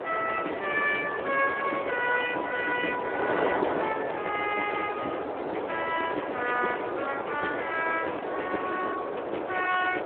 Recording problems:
telephone audio; 320 Hz to 3.3 kHz, Speex
wind noise; below 880 Hz, SNR 3 dB

